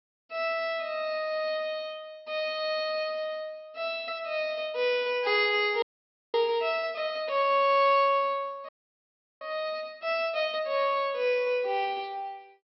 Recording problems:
treble cut off; nothing above 5.6 kHz
audio freezing; at 6 s for 0.5 s and at 8.5 s for 0.5 s

